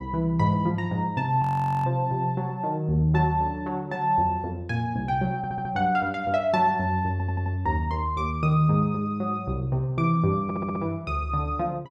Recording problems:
audio freezing; at 1.5 s
stutter; at 5.5 s, at 7 s and at 10 s

